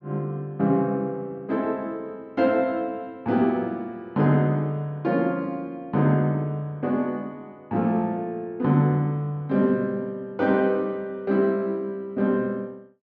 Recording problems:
none

